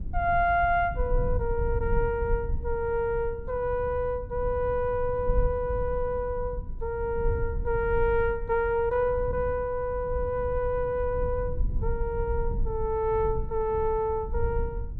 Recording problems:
low-frequency rumble; below 72 Hz, SNR 7 dB

